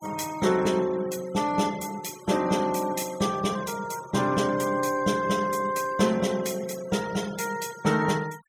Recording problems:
noise reduction artefacts; signal-to-artefact ratio 18 dB

